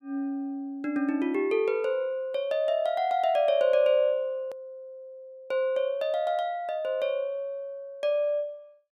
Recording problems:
click at an edit; at 4.5 s

